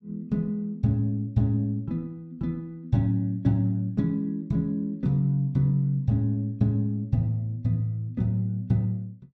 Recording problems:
none

